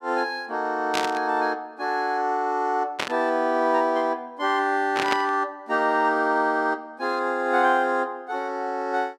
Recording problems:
static burst; at 1 s, at 3 s and at 5 s; peak +2 dB vs average level

